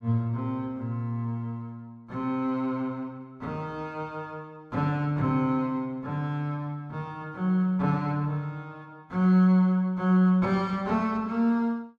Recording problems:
none

